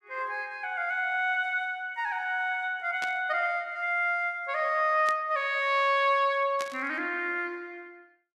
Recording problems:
burst of static; at 3 s, at 5 s and at 6.5 s; peak -6 dB vs average level

